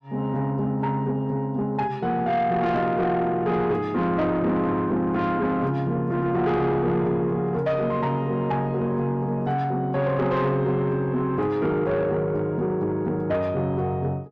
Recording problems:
distorted audio; soft clipping, signal-to-distortion ratio 12 dB

